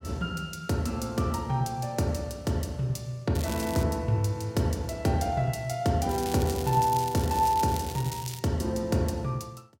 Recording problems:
crackle; at 3.5 s and from 6 to 8.5 s; loose cable, SNR 12 dB

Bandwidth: 16 kHz